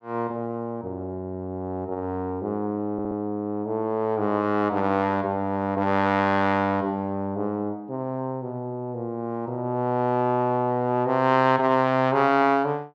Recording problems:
stutter; at 3 s

